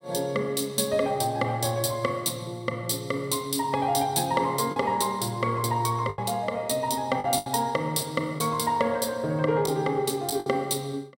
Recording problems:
lost packets; 3% of the sound replaced, filled with the last packet

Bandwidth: 16.5 kHz